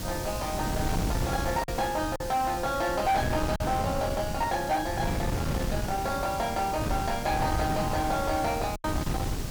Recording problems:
distorted audio; soft clipping, signal-to-distortion ratio 11 dB
background hiss; SNR 12 dB
wind on the microphone; below 350 Hz, SNR 3 dB
packet loss; 2% of the sound replaced, filled with silence
crackling; from 5 to 7 s; loose cable, SNR 27 dB

